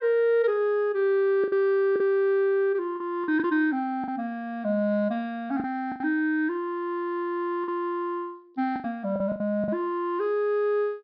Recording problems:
low-pass filter; nothing above 5.5 kHz
packet loss; 6% of the sound replaced, filled with the last packet

